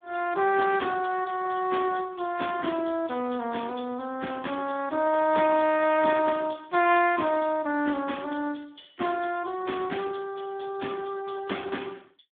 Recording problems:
phone line; 220 Hz to 3 kHz, Speex

